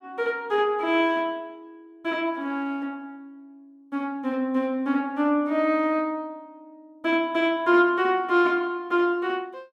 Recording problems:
none

